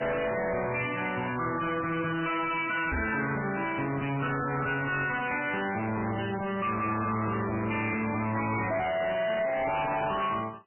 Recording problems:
lossy codec; MP3, log-spectral distance 7 dB, nothing above 2.4 kHz
distorted audio; hard clipping, signal-to-distortion ratio 5 dB
microphone thump; at 3 s; peak +3 dB vs average level

